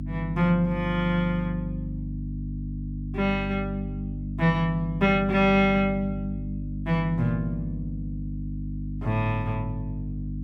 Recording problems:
hum; 50 Hz, harmonics up to 300 Hz, SNR 7 dB

